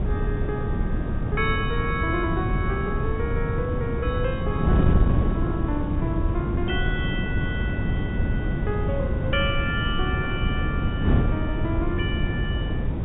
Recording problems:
low-pass filter; nothing above 4 kHz
hiss; SNR 16 dB
wind noise; below 190 Hz, SNR -4 dB

